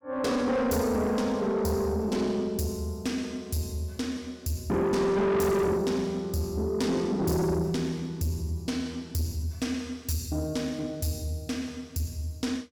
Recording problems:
distortion; soft clipping, signal-to-distortion ratio 7 dB

